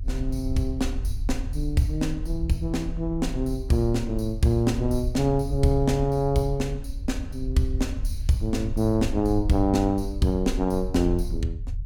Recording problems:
rumble; below 64 Hz, SNR 7 dB

